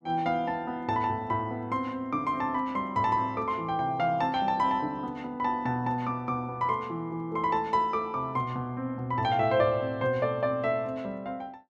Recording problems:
none

